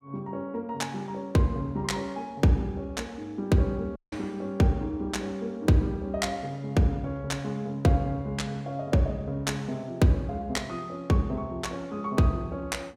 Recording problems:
dropout; at 4 s

